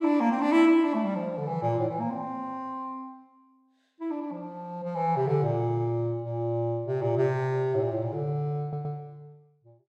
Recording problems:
stutter; at 8.5 s

